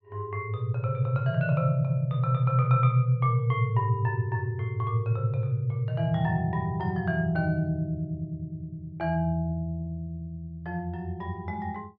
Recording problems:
none

